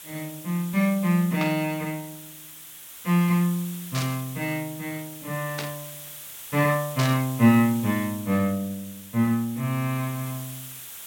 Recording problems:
background hiss; SNR 14 dB
burst of static; 4 times, first at 1.5 s; peak -2 dB vs average level

